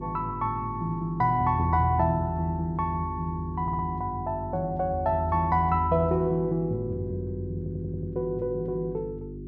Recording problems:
hum; 50 Hz, harmonics up to 400 Hz, SNR 11 dB
stutter; at 3.5 s and at 7.5 s

